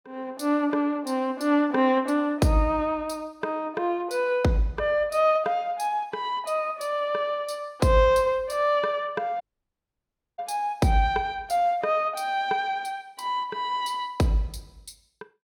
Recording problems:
dropout; at 9.5 s for 1 s

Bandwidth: 17 kHz